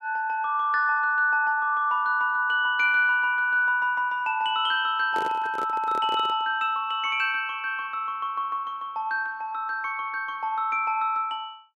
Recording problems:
microphone handling noise; from 5 to 6.5 s; peak -7 dB vs average level

